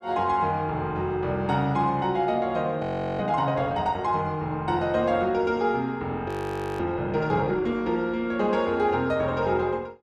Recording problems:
audio freezing; at 3 s and at 6.5 s for 0.5 s

